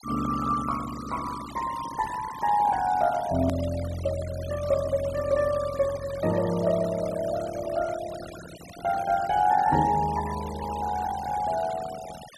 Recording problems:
noise reduction artefacts; signal-to-artefact ratio 15 dB
hard cut with a click; at 3.5 s

